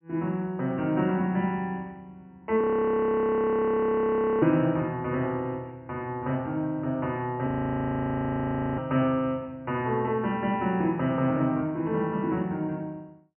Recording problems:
treble missing; nothing above 3 kHz
audio freezing; at 2.5 s for 2 s and at 7.5 s for 1.5 s

